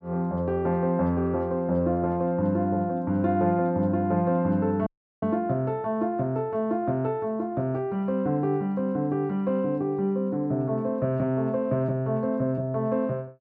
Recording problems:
dropout; at 5 s

